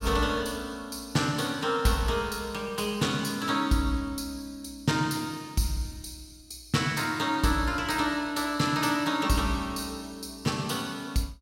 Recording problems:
none

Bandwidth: 16 kHz